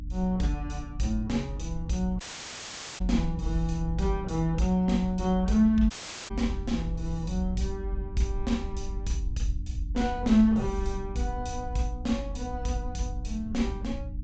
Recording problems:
treble missing; nothing above 8 kHz
hum; 60 Hz, harmonics up to 300 Hz, SNR 15 dB
low-frequency rumble; below 68 Hz, strongest tone 46 Hz, SNR 7 dB
dropout; at 2 s for 1 s and at 6 s

